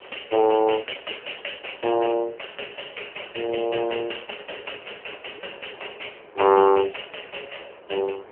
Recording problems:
telephone audio; 300 Hz to 3.1 kHz, AMR-NB
wind noise; below 1 kHz, SNR 23 dB

